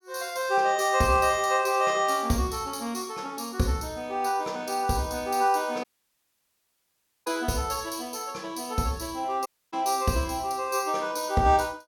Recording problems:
audio cutting out; at 6 s for 1.5 s and at 9.5 s

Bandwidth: 18 kHz